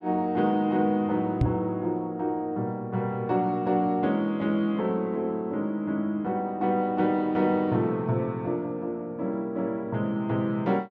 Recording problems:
microphone bump; at 1.5 s; peak +7 dB vs average level

